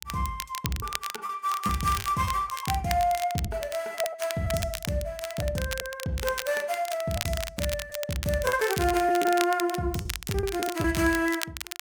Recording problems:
crackling; vinyl, SNR 8 dB
packet loss; 6% of the sound replaced, filled with the last packet

